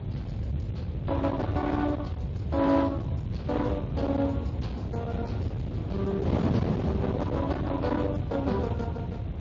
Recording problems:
lossy compression; Speex, then MP3, log-spectral distance 2 dB
distortion; hard clipping, signal-to-distortion ratio 10 dB
hum; 60 Hz, harmonics up to 660 Hz, SNR 17 dB
low-frequency rumble; below 270 Hz, SNR 3 dB
wind noise; below 410 Hz, SNR 6 dB

